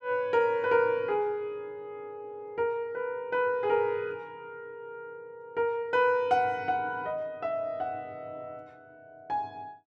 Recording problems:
none

